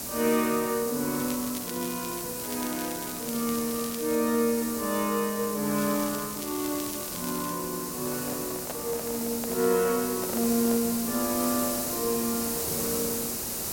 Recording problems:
hiss; SNR 3 dB
crackle; from 1 to 2 s, from 2.5 to 4 s and from 6 to 7.5 s; loose cable, SNR 12 dB
handling noise; from 8 to 11 s; peak -3 dB vs average level

